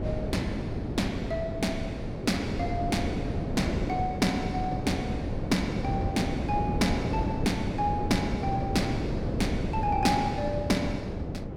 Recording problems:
wind on the microphone; below 370 Hz, SNR 1 dB

